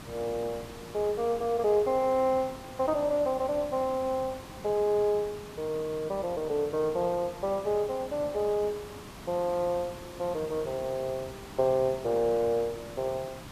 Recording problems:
hiss; SNR 15 dB

